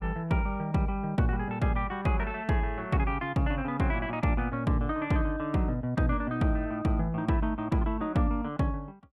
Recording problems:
none

